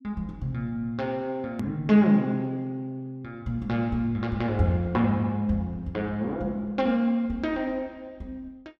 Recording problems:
hard cut with a click; at 1.5 s

